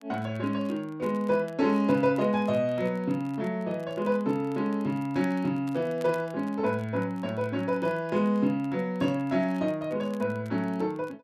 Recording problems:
crackling; vinyl, SNR 29 dB

